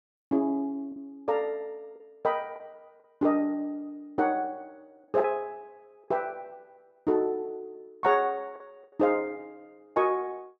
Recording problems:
lost packets; 3% of the sound replaced, filled with the last packet

